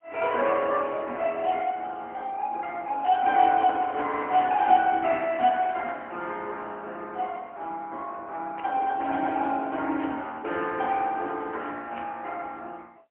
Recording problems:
telephone audio; 240 Hz to 3.3 kHz, AMR-NB, then MP3
burst of static; 4 times, first at 3 s; peak -9 dB vs average level

